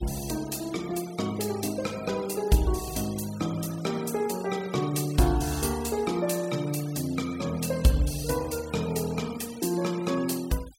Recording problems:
denoising artefacts; signal-to-artefact ratio 16 dB

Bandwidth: 16 kHz